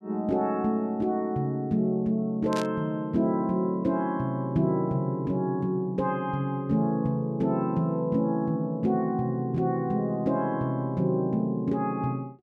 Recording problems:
static burst; at 2.5 s; peak -6 dB vs average level

